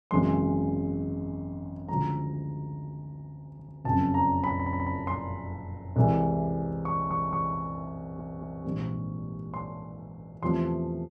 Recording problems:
stutter; 4 times, first at 3.5 s

